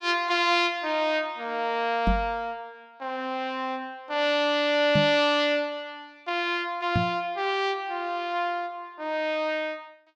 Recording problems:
microphone bump; at 2 s, at 5 s and at 7 s; peak +4 dB vs average level

